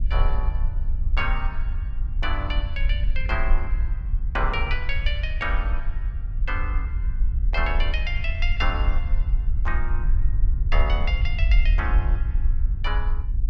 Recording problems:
low-frequency rumble; below 52 Hz, SNR -5 dB

